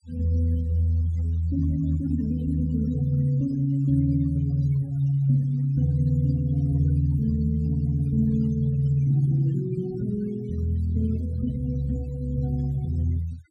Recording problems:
noise reduction artefacts; signal-to-artefact ratio 24 dB

